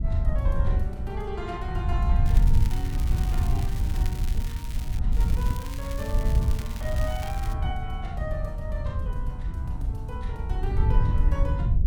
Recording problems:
wind noise; below 80 Hz, SNR -9 dB
crackling; from 2.5 to 5 s and from 5 to 7.5 s; loose cable, SNR 7 dB

